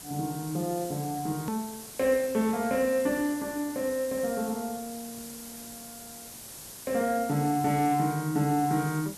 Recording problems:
hiss; SNR 13 dB
hard cut with a click; at 1.5 s

